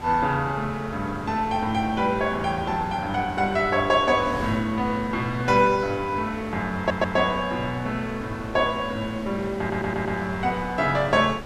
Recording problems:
wind noise; below 1 kHz, SNR 13 dB
stutter; at 7 s and at 9.5 s

